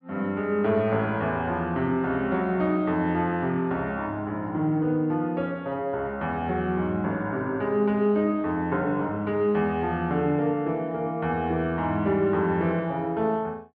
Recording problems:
low-pass filter; nothing above 5.5 kHz

